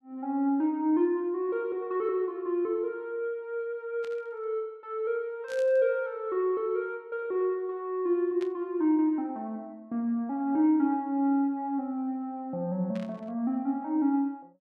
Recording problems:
burst of static; 4 times, first at 4 s; peak -13 dB vs average level

